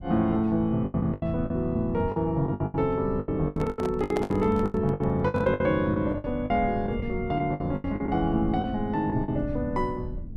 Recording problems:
low-frequency rumble; below 150 Hz, SNR 13 dB
lost packets; 15% of the sound replaced, filled with the last packet
handling noise; from 3.5 to 5.5 s; peak -2 dB vs average level

